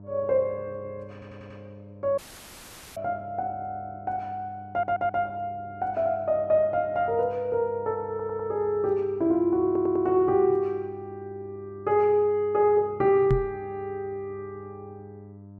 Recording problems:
hum; 50 Hz, harmonics up to 1 kHz, SNR 20 dB
stutter; 4 times, first at 1 s
dropout; at 2 s for 1 s
microphone thump; at 13 s; peak +4 dB vs average level

